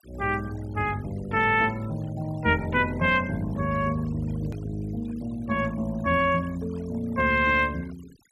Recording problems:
denoising artefacts; signal-to-artefact ratio 22 dB
hard cut with a click; at 4.5 s

